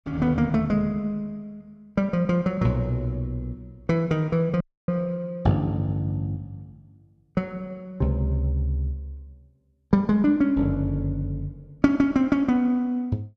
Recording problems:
audio cutting out; at 4.5 s

